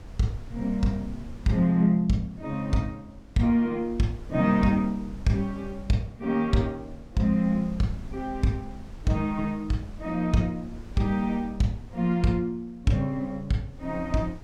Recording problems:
wind on the microphone; below 110 Hz, SNR 18 dB

